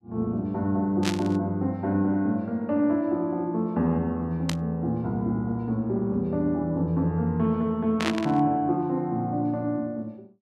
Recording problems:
static burst; at 1 s, at 4.5 s and at 8 s; peak +2 dB vs average level

